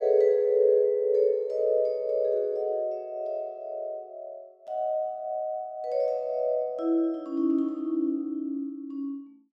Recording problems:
none

